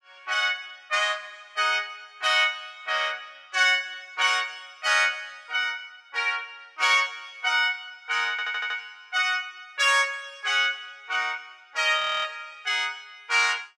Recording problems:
audio stuttering; at 8.5 s
frozen audio; at 12 s

